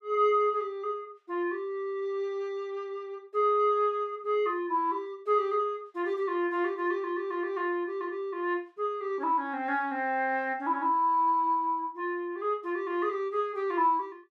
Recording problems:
none

